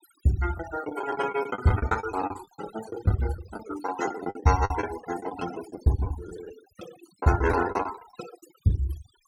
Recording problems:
denoising artefacts; signal-to-artefact ratio 12 dB
packet loss; 14% of the sound replaced, filled with the last packet

